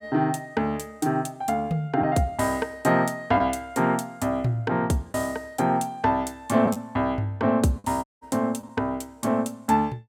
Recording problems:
lost packets; 1.7% of the sound replaced, filled with the last packet
dropout; at 8 s

